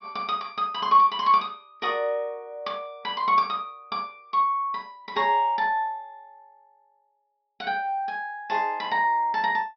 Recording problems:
treble missing; nothing above 5.5 kHz

